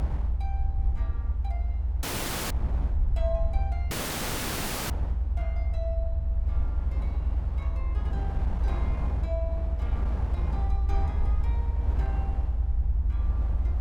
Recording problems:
low-frequency rumble; below 74 Hz, strongest tone 54 Hz, SNR -13 dB
wind noise; below 260 Hz, SNR -2 dB
dropout; at 2 s and at 4 s for 1 s

